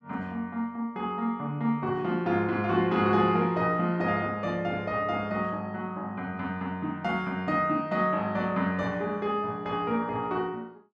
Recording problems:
none

